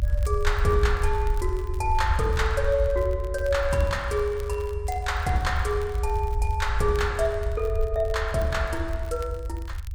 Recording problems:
low-frequency rumble; below 78 Hz, SNR 3 dB
crackling; vinyl, SNR 24 dB

